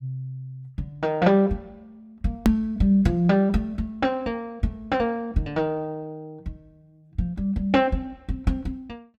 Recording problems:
click at an edit; at 2.5 s

